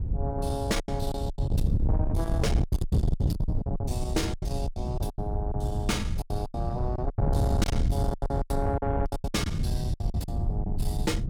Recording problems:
distortion; soft clipping, signal-to-distortion ratio 7 dB
wind noise; below 130 Hz, SNR -4 dB
packet loss; 16% of the sound replaced, filled with silence

